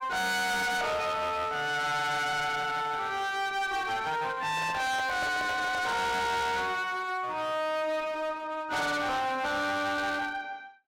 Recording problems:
distortion; hard clipping, uneven, signal-to-distortion ratio 5 dB
microphone handling noise; from 4.5 to 6 s; peak -4 dB vs average level

